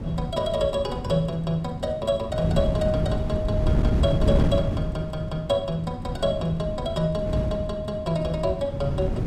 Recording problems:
wind on the microphone; below 200 Hz, SNR 2 dB

